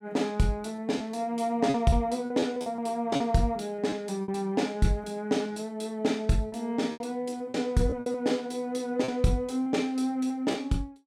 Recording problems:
packet loss; 8% of the sound replaced, filled with repeated pitch periods

